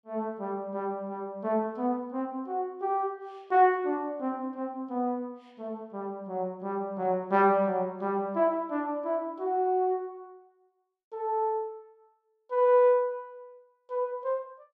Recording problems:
none

